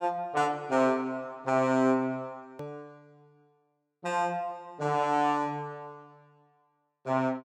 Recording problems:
edit click; at 2.5 s

